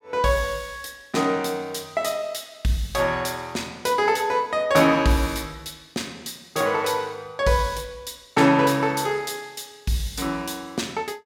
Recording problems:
none

